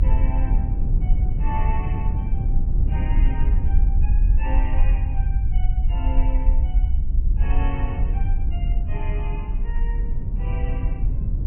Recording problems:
low-pass filter; nothing above 3 kHz
rumble; below 56 Hz, SNR -13 dB
wind noise; below 130 Hz, SNR -6 dB

